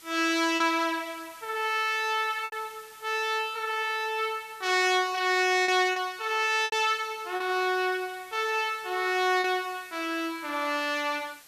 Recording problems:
hiss; slope +1 dB per octave, SNR 23 dB
lost packets; 3% of the sound replaced, filled with repeated pitch periods

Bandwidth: 14.5 kHz